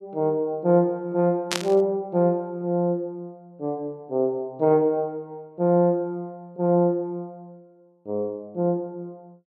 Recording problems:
static burst; at 1.5 s; peak +3 dB vs average level

